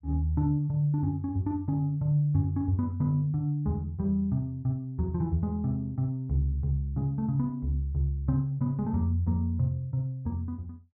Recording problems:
none

